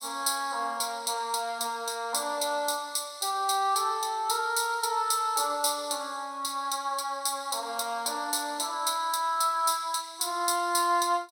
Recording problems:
none

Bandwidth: 16.5 kHz